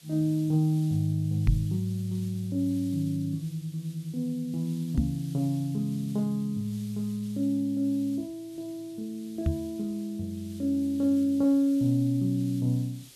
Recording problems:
hiss; SNR 23 dB
microphone thump; at 1.5 s, at 5 s and at 9.5 s; peak +7 dB vs average level

